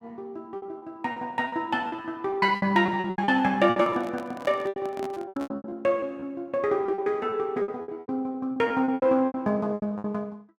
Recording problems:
lost packets; 18% of the sound replaced, filled with repeated pitch periods
microphone handling noise; from 3.5 to 5.5 s; peak -7 dB vs average level

